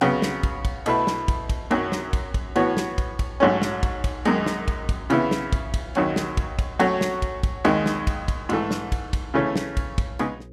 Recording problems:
hum; 60 Hz, harmonics up to 540 Hz, SNR 22 dB

